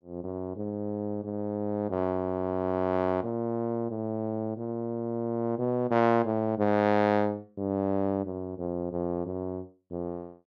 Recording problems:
none

